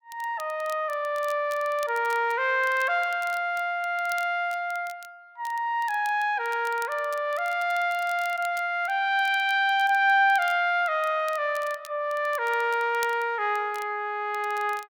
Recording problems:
crackle; vinyl, SNR 23 dB

